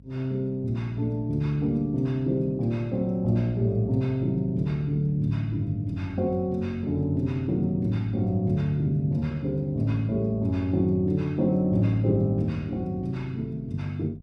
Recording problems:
mains hum; 50 Hz, harmonics up to 500 Hz, SNR 22 dB

